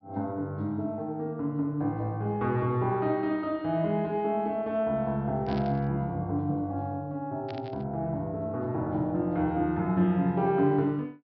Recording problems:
low-pass filter; nothing above 5.5 kHz
static burst; at 5.5 s and at 7.5 s; peak -12 dB vs average level

